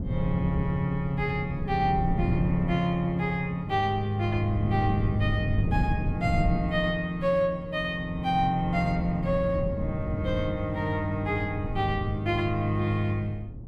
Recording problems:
wind on the microphone; below 180 Hz, SNR 6 dB

